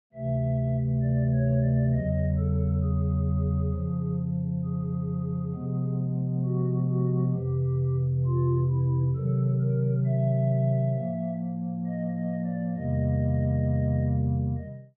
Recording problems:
none

